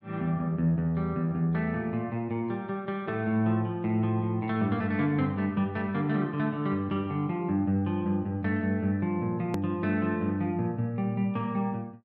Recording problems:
click at an edit; at 9.5 s

